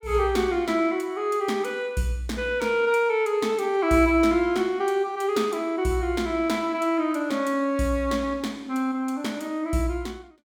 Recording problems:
none

